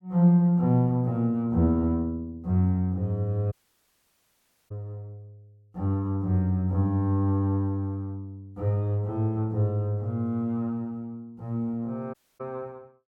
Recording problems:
dropout; at 3.5 s for 1 s and at 12 s

